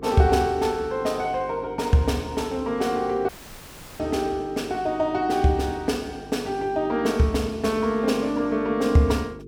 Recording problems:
hum; 50 Hz, harmonics up to 450 Hz, SNR 18 dB
dropout; at 3.5 s for 0.5 s

